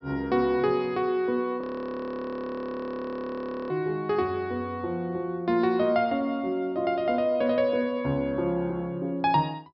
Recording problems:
treble missing; nothing above 5.5 kHz
audio freezing; at 1.5 s for 2 s

